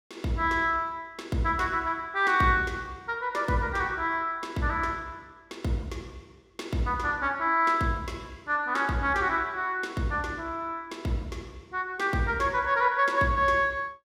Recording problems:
none

